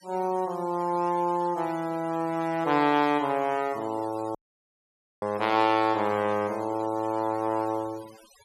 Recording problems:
noise reduction artefacts; signal-to-artefact ratio 22 dB
audio cutting out; at 4.5 s for 1 s

